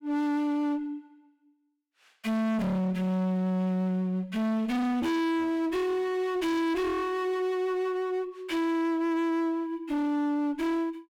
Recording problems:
distortion; hard clipping, uneven, signal-to-distortion ratio 6 dB

